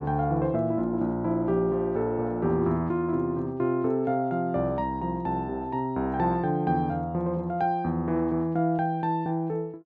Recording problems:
none

